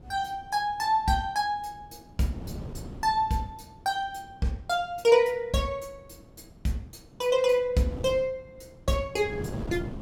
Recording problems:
wind on the microphone; below 310 Hz, SNR 16 dB

